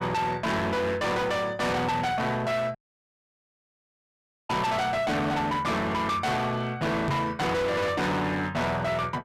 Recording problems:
distorted audio; hard clipping, signal-to-distortion ratio 6 dB
dropout; at 3 s for 1.5 s
microphone bump; at 7 s; peak +3 dB vs average level

